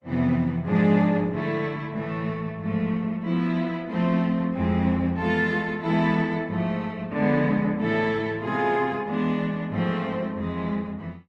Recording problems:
lossy compression; Opus, log-spectral distance 2 dB

